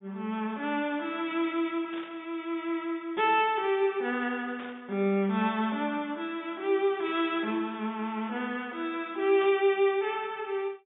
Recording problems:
low-pass filter; nothing above 3.7 kHz
static burst; at 2 s, at 4.5 s and at 9.5 s; peak -12 dB vs average level

